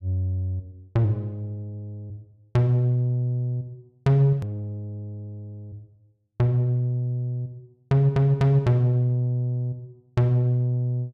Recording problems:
edit click; at 4.5 s

